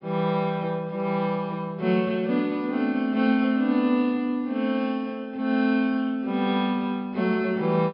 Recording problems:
treble missing; nothing above 5.5 kHz

